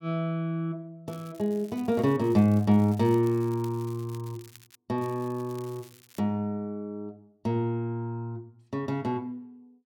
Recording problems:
crackle; from 1 to 5 s and from 5 to 6 s; loose cable, SNR 25 dB

